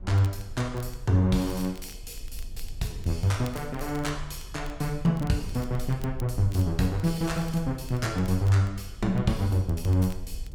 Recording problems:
rumble; below 50 Hz, strongest tone 20 Hz, SNR 15 dB
crackle; vinyl, SNR 25 dB

